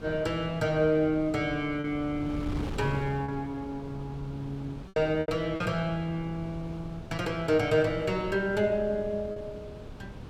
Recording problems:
wind on the microphone; below 310 Hz, SNR 12 dB
packet loss; 3% of the sound replaced, filled with repeated pitch periods

